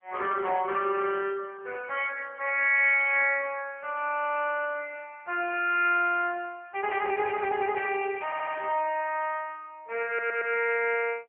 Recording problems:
telephone audio; 340 Hz to 3.1 kHz, AMR-NB
stutter; at 8.5 s and at 10 s

